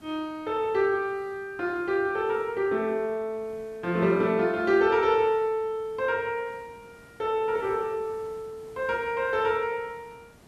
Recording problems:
hiss; slope -5 dB per octave, SNR 27 dB

